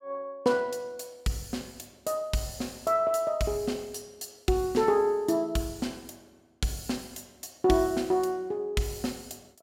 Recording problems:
none

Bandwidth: 16 kHz